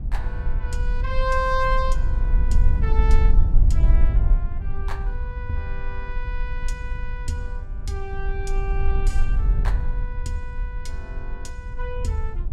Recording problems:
rumble; below 54 Hz, SNR -6 dB

